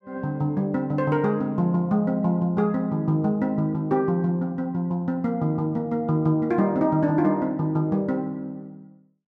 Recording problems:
none

